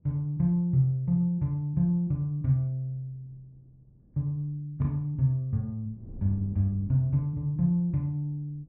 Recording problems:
wind on the microphone; below 200 Hz, SNR 23 dB

